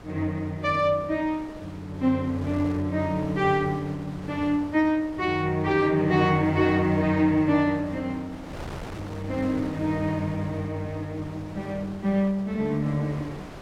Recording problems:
wind noise; below 980 Hz, SNR 16 dB

